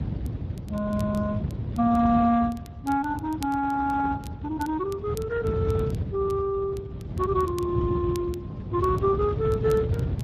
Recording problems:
codec artefacts; Speex, log-spectral distance 2 dB
low-frequency rumble; below 180 Hz, SNR 5 dB
crackling; vinyl, SNR 24 dB

